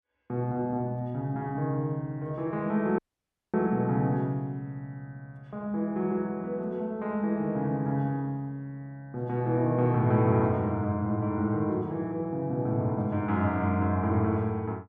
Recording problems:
audio cutting out; at 3 s for 0.5 s

